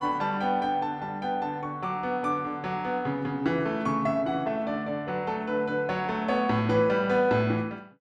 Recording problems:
none

